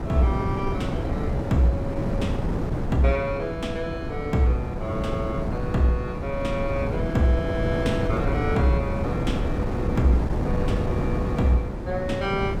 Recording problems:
wind on the microphone; below 320 Hz, SNR 1 dB

